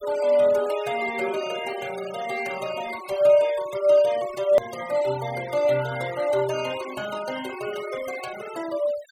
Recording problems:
noise reduction artefacts; signal-to-artefact ratio 16 dB
edit click; at 4.5 s

